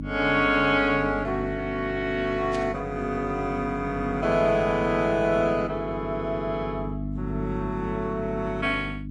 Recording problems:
lossy codec; MP3, then Vorbis, log-spectral distance 2 dB
hum; 50 Hz, harmonics up to 300 Hz, SNR 9 dB
static burst; at 2.5 s; peak -10 dB vs average level

